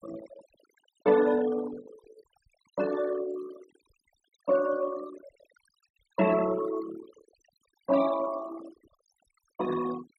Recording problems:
denoising artefacts; signal-to-artefact ratio 15 dB

